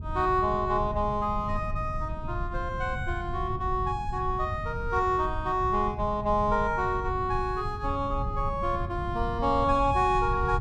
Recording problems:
rumble; below 120 Hz, SNR 8 dB

